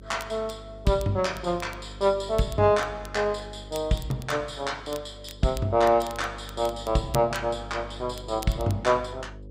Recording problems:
electrical hum; 50 Hz, harmonics up to 550 Hz, SNR 17 dB
crackle; vinyl, SNR 20 dB

